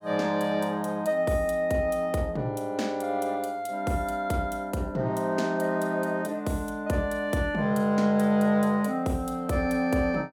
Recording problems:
none

